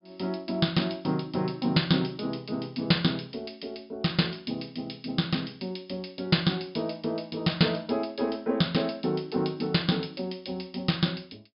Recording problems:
low-pass filter; nothing above 5.5 kHz

